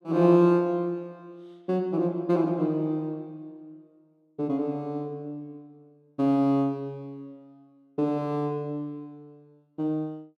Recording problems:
none

